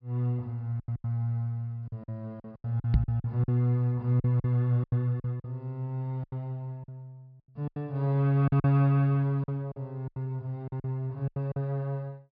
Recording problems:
treble cut off; nothing above 5.5 kHz
packet loss; 12% of the sound replaced, filled with silence
microphone bump; at 3 s; peak +8 dB vs average level

